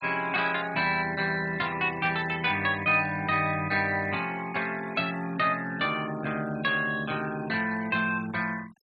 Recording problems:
denoising artefacts; signal-to-artefact ratio 19 dB

